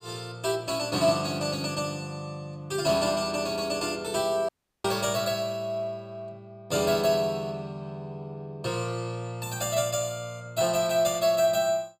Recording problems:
audio cutting out; at 4.5 s

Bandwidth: 15.5 kHz